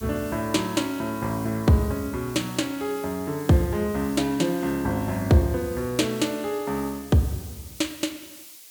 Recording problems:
background hiss; SNR 17 dB

